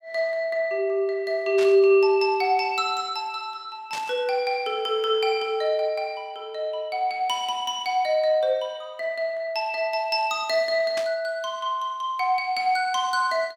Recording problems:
burst of static; at 1.5 s, at 4 s and at 11 s; peak -5 dB vs average level

